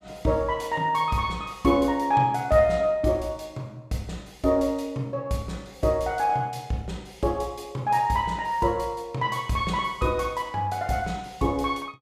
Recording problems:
none

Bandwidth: 14.5 kHz